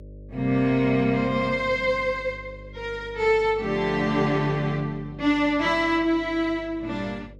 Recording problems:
electrical hum; 50 Hz, harmonics up to 600 Hz, SNR 20 dB

